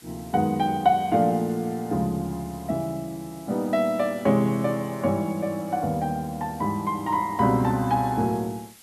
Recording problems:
background hiss; slope 0 dB per octave, SNR 23 dB

